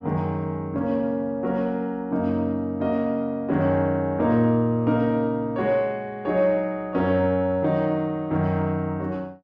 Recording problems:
none

